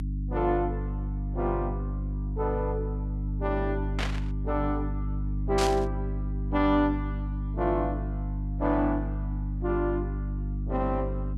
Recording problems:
mains hum; 50 Hz, harmonics up to 300 Hz, SNR 2 dB
static burst; at 4 s and at 5.5 s; peak +2 dB vs average level

